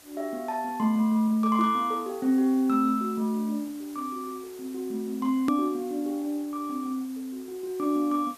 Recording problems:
hiss; slope -2 dB per octave, SNR 22 dB
edit click; at 5.5 s

